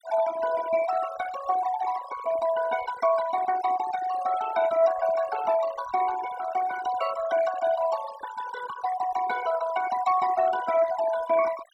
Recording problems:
noise reduction artefacts; signal-to-artefact ratio 12 dB

